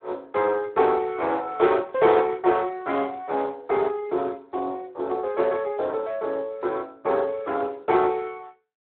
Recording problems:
telephone audio; 300 Hz to 3.8 kHz, Speex

